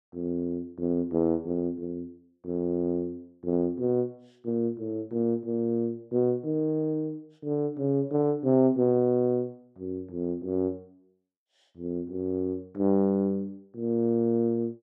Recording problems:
none

